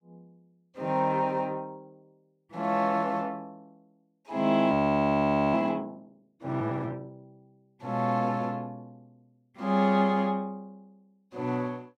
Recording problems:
frozen audio; at 4.5 s for 1 s

